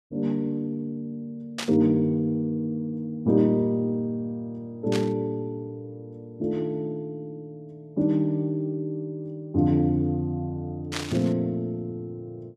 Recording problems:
burst of static; at 1.5 s, at 5 s and at 11 s; peak 0 dB vs average level

